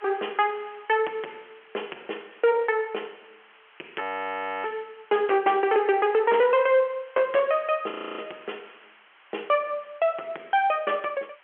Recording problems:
phone line; 260 Hz to 3.3 kHz, G.711
distorted audio; hard clipping, signal-to-distortion ratio 11 dB
hiss; SNR 27 dB
audio freezing; at 4 s for 0.5 s and at 8 s

